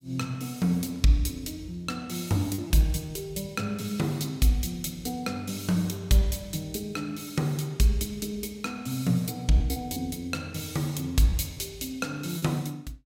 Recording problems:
lost packets; 1.9% of the sound replaced, filled with repeated pitch periods

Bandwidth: 16 kHz